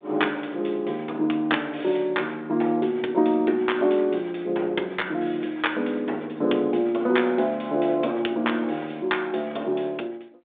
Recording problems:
telephone audio; 260 Hz to 3.6 kHz, G.726

